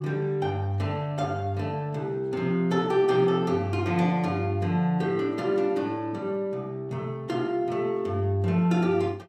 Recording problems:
none

